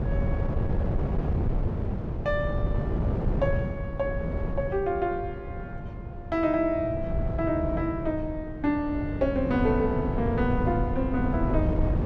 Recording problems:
wind noise; below 190 Hz, SNR 2 dB

